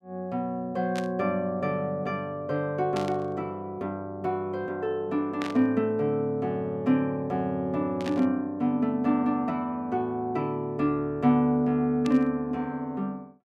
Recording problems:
burst of static; 5 times, first at 1 s; peak -5 dB vs average level

